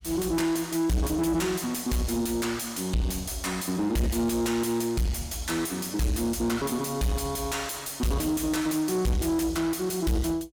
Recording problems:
distorted audio; soft clipping, signal-to-distortion ratio 6 dB

